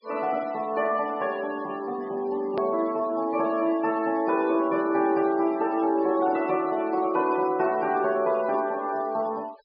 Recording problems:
treble missing; nothing above 5.5 kHz
noise reduction artefacts; signal-to-artefact ratio 24 dB
hard cut with a click; at 2.5 s

